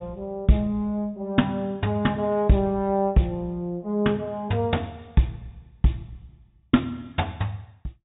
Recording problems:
treble missing; nothing above 4 kHz

